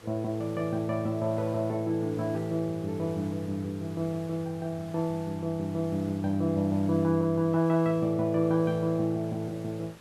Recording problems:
background hiss; slope -4 dB per octave, SNR 22 dB

